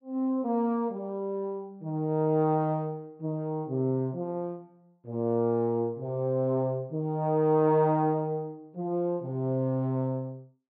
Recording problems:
none

